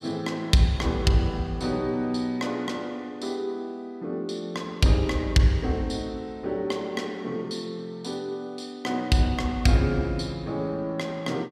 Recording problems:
none

